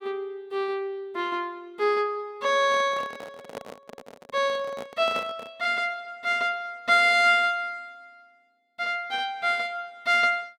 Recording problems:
handling noise; from 2.5 to 5.5 s; peak -6 dB vs average level

